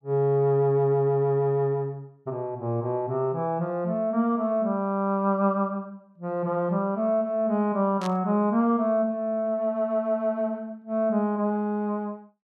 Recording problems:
static burst; at 8 s; peak -9 dB vs average level

